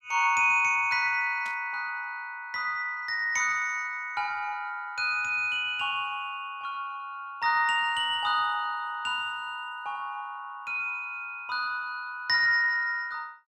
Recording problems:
burst of static; at 1.5 s; peak -13 dB vs average level

